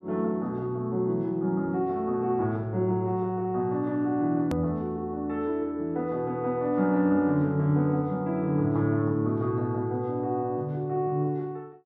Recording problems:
click at an edit; at 4.5 s

